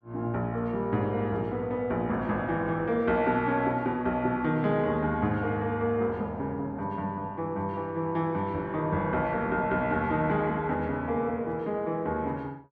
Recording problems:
none

